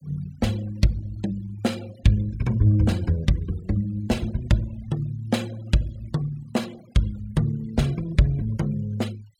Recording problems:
noise reduction artefacts; signal-to-artefact ratio 22 dB

